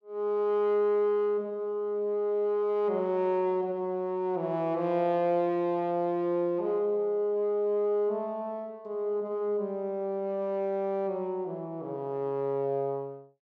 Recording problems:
none

